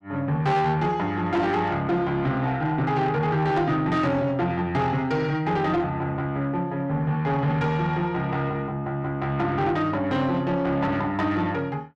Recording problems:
distorted audio; soft clipping, signal-to-distortion ratio 11 dB

